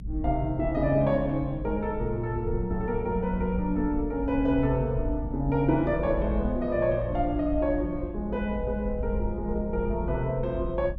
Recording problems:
rumble; below 76 Hz, strongest tone 52 Hz, SNR 8 dB

